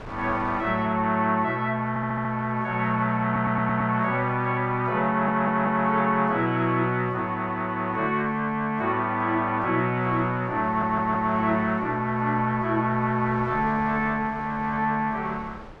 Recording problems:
wind noise; below 960 Hz, SNR 22 dB
audio stuttering; 4 times, first at 2 s

